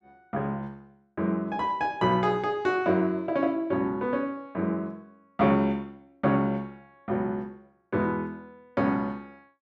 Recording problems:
none

